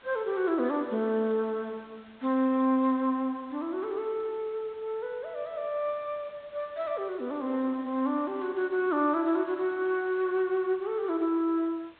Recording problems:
treble missing; nothing above 4 kHz
hiss; SNR 27 dB

